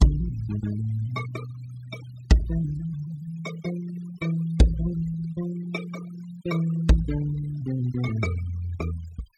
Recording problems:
noise reduction artefacts; signal-to-artefact ratio 16 dB

